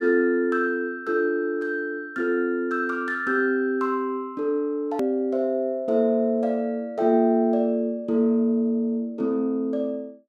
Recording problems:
hard cut with a click; at 5 s

